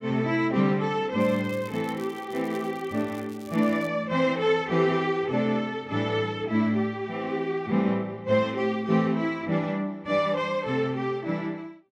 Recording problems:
crackling; from 1 to 4 s; loose cable, SNR 25 dB

